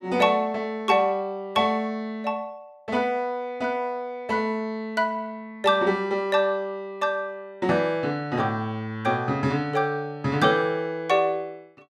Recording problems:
none

